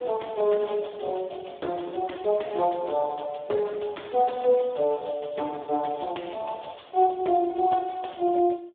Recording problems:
telephone audio; 260 Hz to 3.6 kHz, Speex

